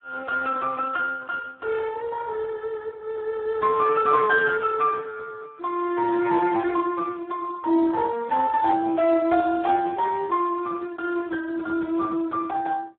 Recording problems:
phone line; 260 Hz to 2.1 kHz, Speex

